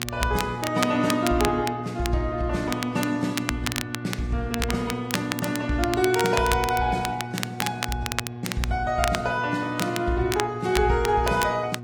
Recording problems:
lossy compression; AAC, log-spectral distance 2 dB, nothing above 13.8 kHz
hum; 60 Hz, harmonics up to 1.2 kHz, SNR 11 dB
crackling; vinyl, SNR 7 dB

